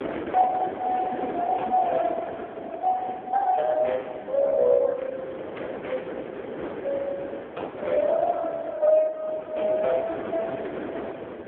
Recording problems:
phone line; 280 Hz to 3.4 kHz, AMR-NB
wind on the microphone; below 660 Hz, SNR 10 dB

